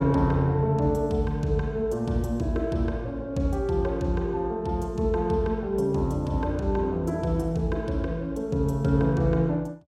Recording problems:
none

